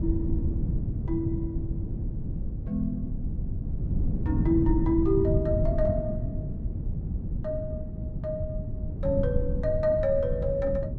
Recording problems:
low-frequency rumble; below 140 Hz, SNR 2 dB

